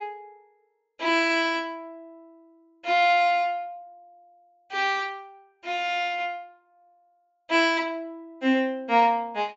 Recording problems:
treble missing; nothing above 7.4 kHz

